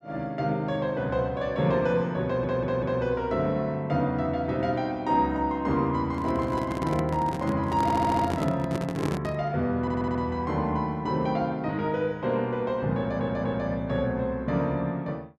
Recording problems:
audio stuttering; 4 times, first at 2.5 s
handling noise; from 6 to 9.5 s; peak 0 dB vs average level

